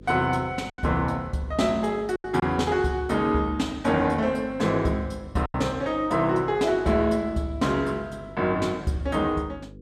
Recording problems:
electrical hum; 50 Hz, harmonics up to 500 Hz, SNR 20 dB
packet loss; 3% of the sound replaced, filled with silence

